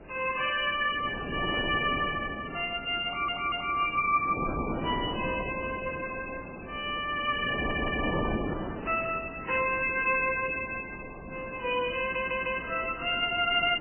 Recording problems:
lossy codec; MP3, then MP3, log-spectral distance 6 dB, nothing above 2.9 kHz
wind on the microphone; below 640 Hz, SNR 9 dB
audio stuttering; at 3 s, at 7.5 s and at 12 s

